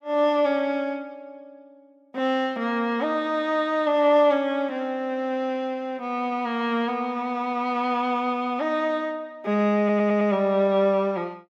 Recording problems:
stutter; at 10 s

